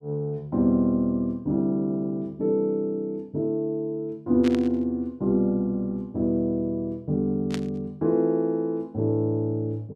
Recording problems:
static burst; at 4.5 s and at 7.5 s; peak -5 dB vs average level

